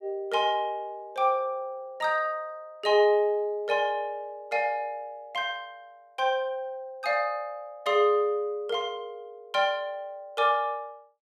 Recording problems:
none

